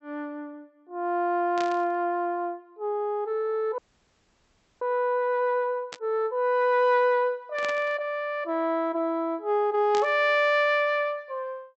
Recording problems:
treble missing; nothing above 8 kHz
static burst; 4 times, first at 1.5 s; peak -6 dB vs average level
audio freezing; at 4 s for 1 s

